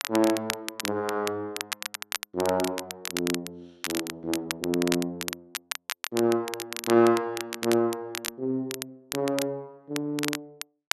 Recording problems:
crackle; vinyl, SNR 6 dB

